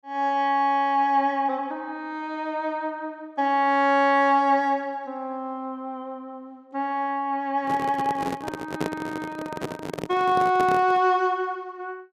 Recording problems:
handling noise; from 7.5 to 11 s; peak 0 dB vs average level

